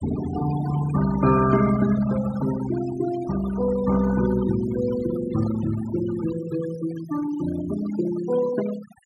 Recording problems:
denoising artefacts; signal-to-artefact ratio 13 dB

